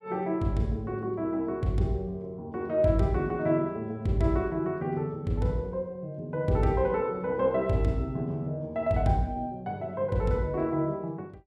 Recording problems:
none

